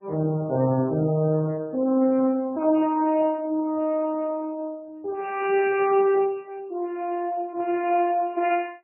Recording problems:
lossy compression; Speex, then MP3, log-spectral distance 2 dB, nothing above 2.4 kHz

